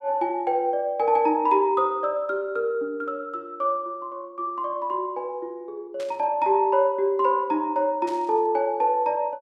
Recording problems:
static burst; at 6 s and at 8 s; peak -14 dB vs average level

